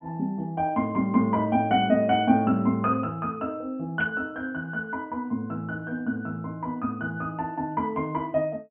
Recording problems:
low-pass filter; nothing above 3.2 kHz
burst of static; at 4 s; peak -10 dB vs average level

